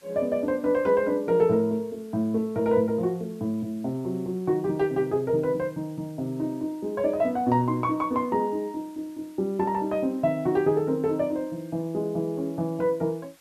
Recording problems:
hiss; slope 0 dB per octave, SNR 29 dB

